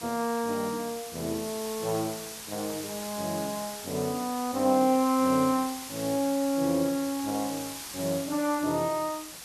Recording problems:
hiss; SNR 10 dB

